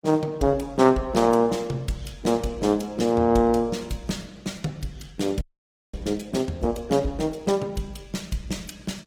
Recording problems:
lossy codec; Opus, log-spectral distance 4 dB, nothing above 19 kHz
frozen audio; at 5.5 s for 0.5 s

